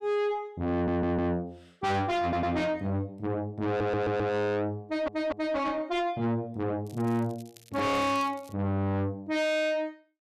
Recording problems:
distortion; soft clipping, signal-to-distortion ratio 6 dB
stutter; 4 times, first at 0.5 s
crackle; from 7 to 8.5 s; loose cable, SNR 25 dB

